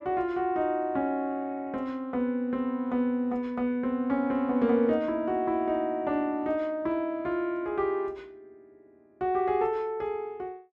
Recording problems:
none

